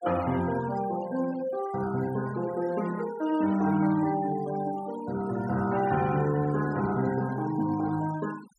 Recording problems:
denoising artefacts; signal-to-artefact ratio 17 dB

